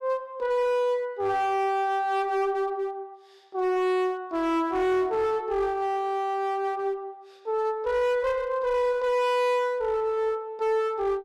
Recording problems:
distorted audio; hard clipping, uneven, signal-to-distortion ratio 9 dB

